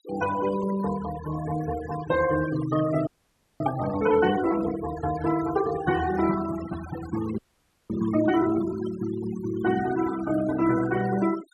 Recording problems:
denoising artefacts; signal-to-artefact ratio 12 dB
audio freezing; at 3 s for 0.5 s and at 7.5 s for 0.5 s

